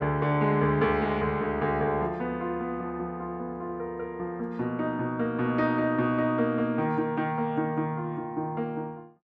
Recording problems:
none

